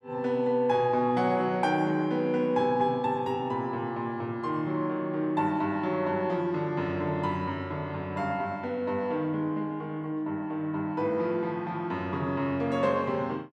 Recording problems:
none

